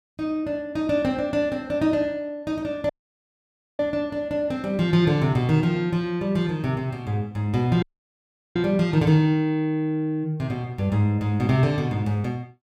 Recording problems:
dropout; at 3 s for 1 s and at 8 s for 0.5 s

